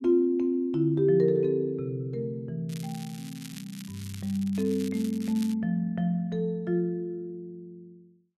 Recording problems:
crackle; from 2.5 to 5.5 s; loose cable, SNR 18 dB

